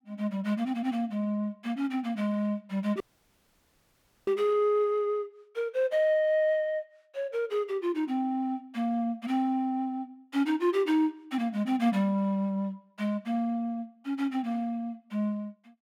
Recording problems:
audio cutting out; at 3 s for 1.5 s

